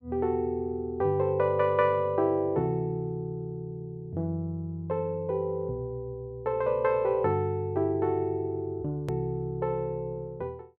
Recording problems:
hard cut with a click; at 9 s

